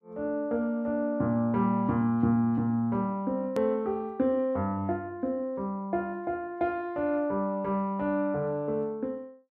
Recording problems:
hard cut with a click; at 3.5 s

